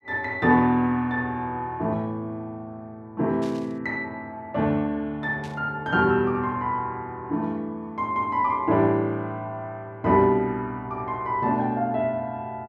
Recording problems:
static burst; at 3.5 s and at 5.5 s; peak -15 dB vs average level

